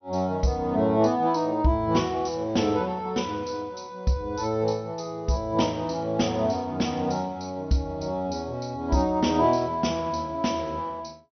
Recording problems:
low-pass filter; nothing above 6 kHz

